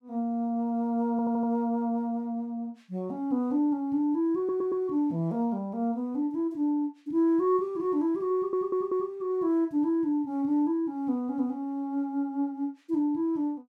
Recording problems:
stutter; at 1 s, at 4.5 s and at 8.5 s

